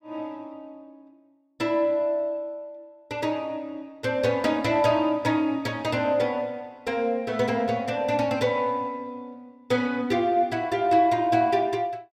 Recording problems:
none

